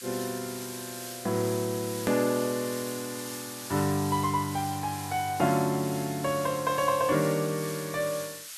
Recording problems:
hiss; SNR 10 dB
hard cut with a click; at 2 s

